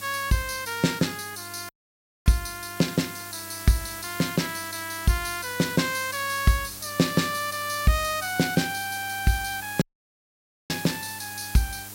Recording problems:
hum; 50 Hz, harmonics up to 800 Hz, SNR 22 dB
hiss; slope 0 dB per octave, SNR 11 dB
audio cutting out; at 1.5 s for 0.5 s and at 10 s for 1 s

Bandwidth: 16 kHz